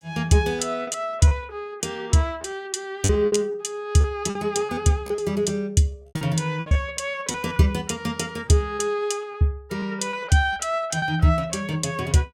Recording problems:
packet loss; 9% of the sound replaced, filled with repeated pitch periods

